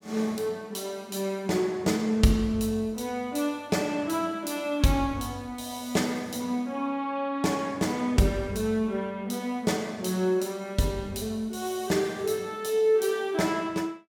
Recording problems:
none

